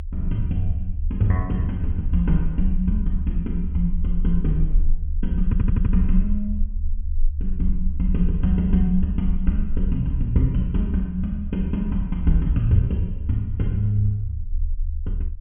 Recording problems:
treble cut off; nothing above 3.4 kHz
rumble; below 68 Hz, SNR 5 dB
stutter; at 5.5 s

